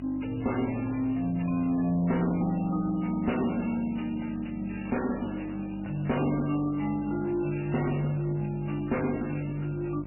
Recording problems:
lossy codec; MP3, then MP3, log-spectral distance 5 dB, nothing above 2.9 kHz
distortion; soft clipping, signal-to-distortion ratio 10 dB
hum; 50 Hz, harmonics up to 1.3 kHz, SNR 14 dB

